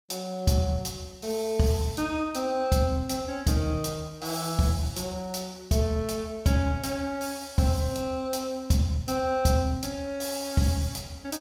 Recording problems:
none

